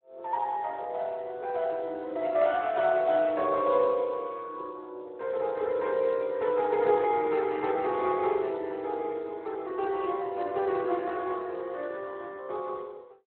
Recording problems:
telephone audio; 300 Hz to 2.8 kHz, Speex

